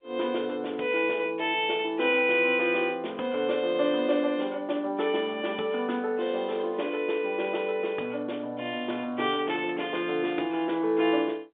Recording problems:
telephone audio; 260 Hz to 3.6 kHz, G.711

